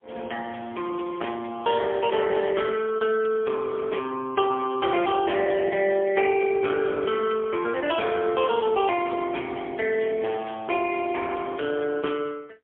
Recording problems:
telephone audio; 280 Hz to 3.3 kHz, AMR-NB, then MP3

